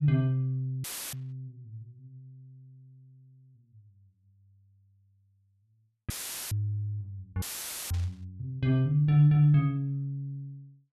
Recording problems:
audio cutting out; at 1 s, at 6 s and at 7.5 s; filled with static
burst of static; at 1 s and at 8 s; peak -15 dB vs average level

